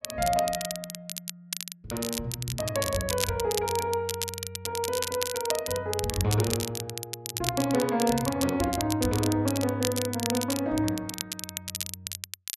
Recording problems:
crackling; vinyl, SNR 5 dB

